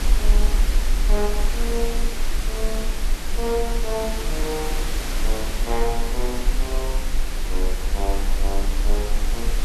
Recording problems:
hiss; slope -3 dB per octave, SNR 1 dB
low-frequency rumble; below 40 Hz, strongest tone 22 Hz, SNR -3 dB

